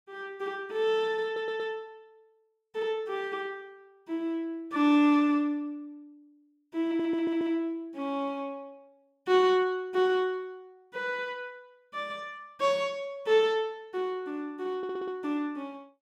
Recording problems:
audio stuttering; at 1.5 s, at 7 s and at 15 s

